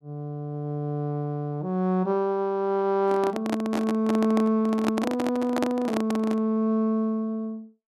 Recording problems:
handling noise; from 3 to 6.5 s; peak +2 dB vs average level

